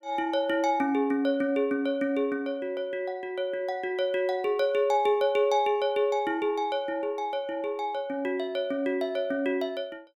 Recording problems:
none

